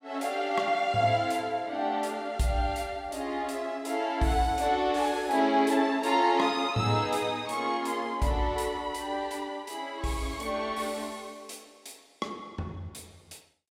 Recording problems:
none

